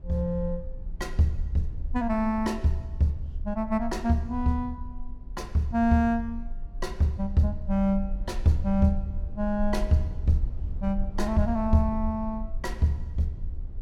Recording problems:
low-frequency rumble; below 48 Hz, strongest tone 18 Hz, SNR 10 dB

